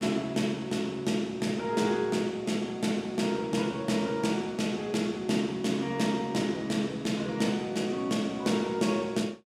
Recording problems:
none

